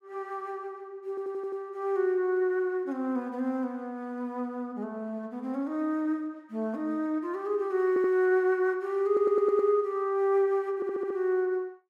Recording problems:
audio stuttering; 4 times, first at 1 s

